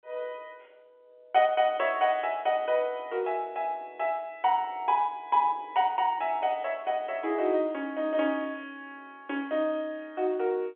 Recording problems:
phone line; 300 Hz to 3.4 kHz, G.711

